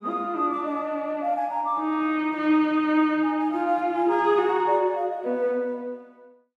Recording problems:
none

